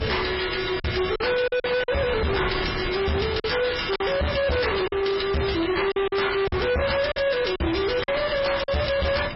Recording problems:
lossy compression; MP3, log-spectral distance 8 dB, nothing above 5.5 kHz
distorted audio; hard clipping, uneven, signal-to-distortion ratio 5 dB
wind noise; below 1.2 kHz, SNR 13 dB
packet loss; 6% of the sound replaced, filled with silence

